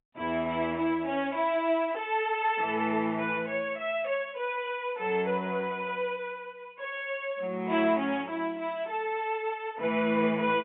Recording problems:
telephone audio; 240 Hz to 3.5 kHz, G.711

